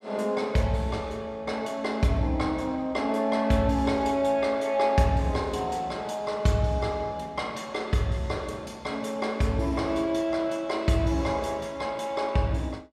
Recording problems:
none

